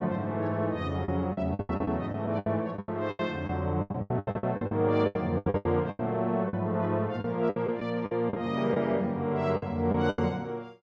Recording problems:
lost packets; 16% of the sound replaced, filled with the last packet

